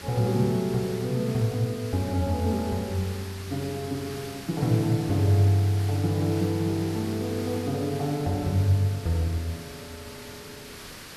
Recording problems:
background hiss; slope -2 dB per octave, SNR 14 dB

